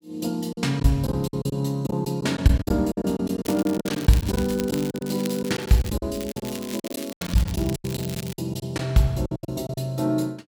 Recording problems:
packet loss; 14% of the sound replaced, filled with silence
crackling; from 3.5 to 6 s and from 6 to 8.5 s; loose cable, SNR 13 dB

